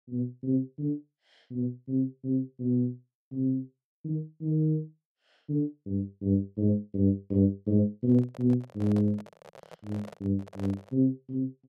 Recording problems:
handling noise; from 8 to 11 s; peak -10 dB vs average level

